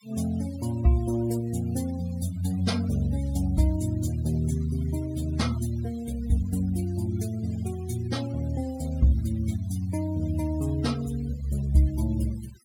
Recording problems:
denoising artefacts; signal-to-artefact ratio 19 dB

